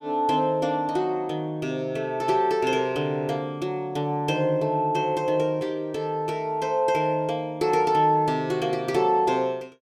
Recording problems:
none

